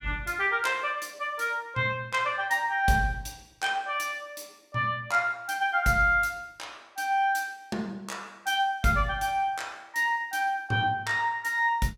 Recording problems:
none

